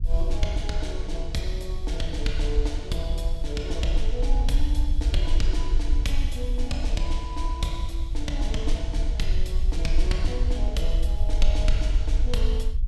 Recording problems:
low-frequency rumble; below 50 Hz, strongest tone 20 Hz, SNR -4 dB

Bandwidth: 14.5 kHz